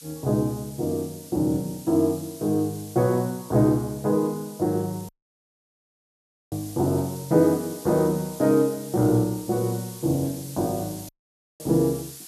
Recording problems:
hiss; slope +4 dB per octave, SNR 17 dB
dropout; at 5 s for 1.5 s and at 11 s for 0.5 s

